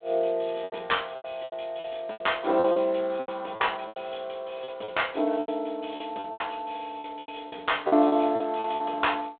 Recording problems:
telephone audio; 260 Hz to 3.6 kHz, G.726
packet loss; 14% of the sound replaced, filled with repeated pitch periods

